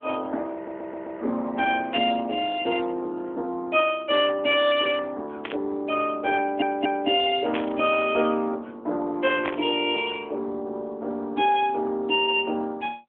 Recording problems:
phone line; 220 Hz to 3.5 kHz, AMR-NB
audio stuttering; at 0.5 s and at 6.5 s
static burst; 4 times, first at 2 s; peak -1 dB vs average level

